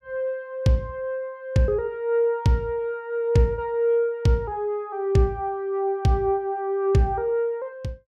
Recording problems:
none

